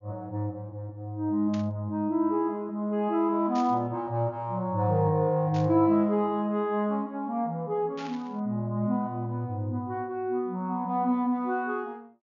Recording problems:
low-pass filter; nothing above 7 kHz
burst of static; 4 times, first at 1.5 s; peak -12 dB vs average level

